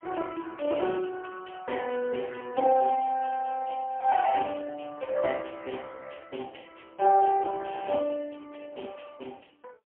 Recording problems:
telephone audio; 300 Hz to 3.3 kHz, AMR-NB, then MP3

